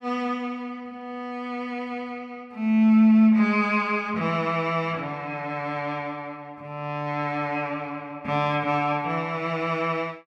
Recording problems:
none

